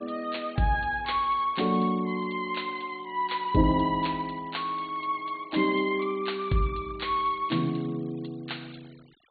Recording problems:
treble missing; nothing above 4.4 kHz
noise reduction artefacts; signal-to-artefact ratio 25 dB

